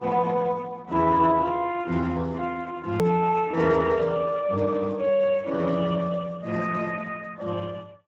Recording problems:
lossy codec; MP3, then Speex, log-spectral distance 4 dB, nothing above 19.5 kHz
edit click; at 3 s

